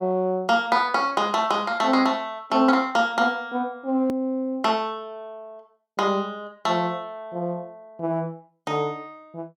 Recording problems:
edit click; at 4 s

